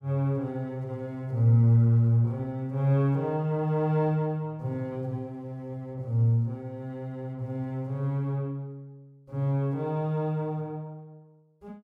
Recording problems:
none

